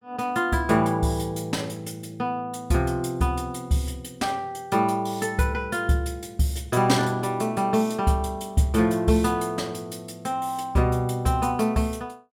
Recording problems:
none

